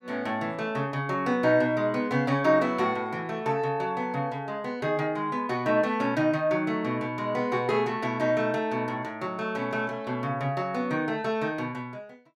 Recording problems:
none

